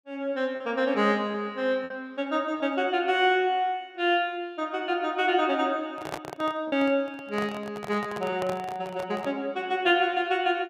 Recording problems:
packet loss; 1.9% of the sound replaced, filled with repeated pitch periods
handling noise; from 6 to 9.5 s; peak -2 dB vs average level

